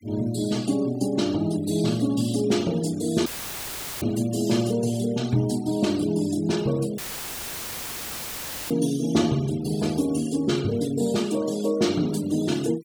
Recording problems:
denoising artefacts; signal-to-artefact ratio 18 dB
audio cutting out; at 3.5 s for 1 s and at 7 s for 1.5 s; filled with static

